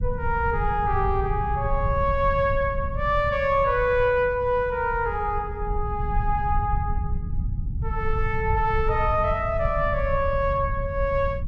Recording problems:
rumble; below 96 Hz, SNR 6 dB

